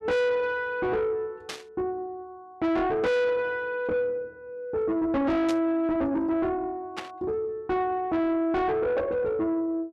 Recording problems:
distorted audio; soft clipping, signal-to-distortion ratio 6 dB
burst of static; at 1.5 s, at 5.5 s and at 7 s; peak -4 dB vs average level

